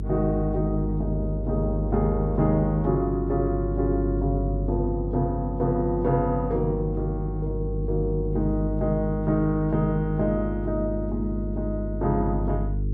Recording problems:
mains hum; 50 Hz, harmonics up to 450 Hz, SNR 4 dB

